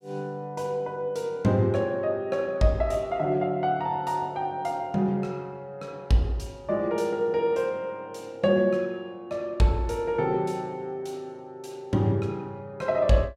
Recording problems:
none

